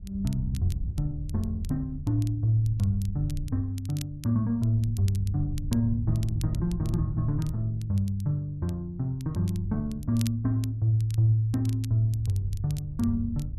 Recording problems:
wind noise; below 98 Hz, SNR 10 dB
crackle; vinyl, SNR 22 dB

